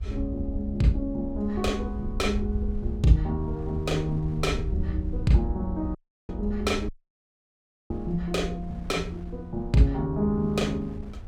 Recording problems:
low-frequency rumble; below 78 Hz, SNR 8 dB
wind noise; below 540 Hz, SNR 25 dB
dropout; at 6 s and at 7 s for 1 s

